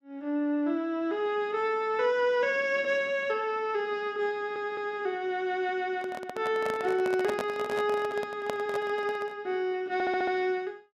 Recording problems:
audio stuttering; at 4.5 s and at 10 s
handling noise; from 6 to 9.5 s; peak -1 dB vs average level

